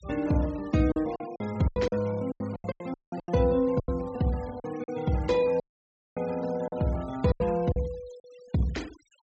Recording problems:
treble cut off; nothing above 8 kHz
denoising artefacts; signal-to-artefact ratio 21 dB
packet loss; 12% of the sound replaced, filled with silence
dropout; at 3 s and at 5.5 s for 0.5 s

